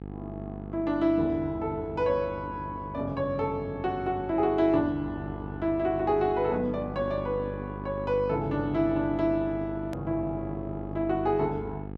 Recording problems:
electrical hum; 50 Hz, harmonics up to 950 Hz, SNR 10 dB
hard cut with a click; at 10 s

